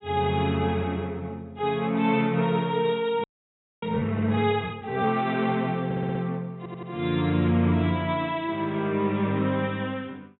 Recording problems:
treble cut off; nothing above 3.8 kHz
frozen audio; at 3 s for 0.5 s
stutter; at 6 s and at 6.5 s

